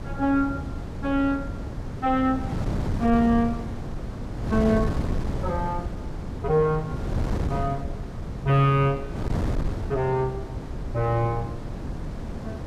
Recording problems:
wind noise; below 250 Hz, SNR 6 dB

